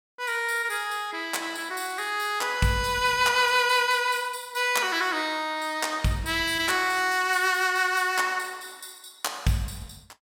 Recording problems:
none

